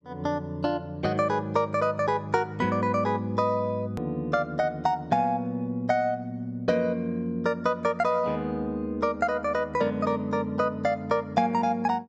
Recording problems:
click at an edit; at 4 s

